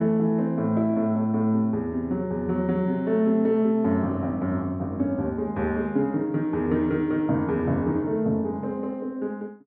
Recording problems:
none

